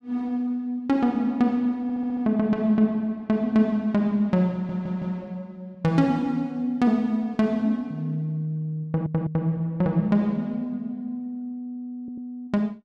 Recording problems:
audio stuttering; 4 times, first at 2 s

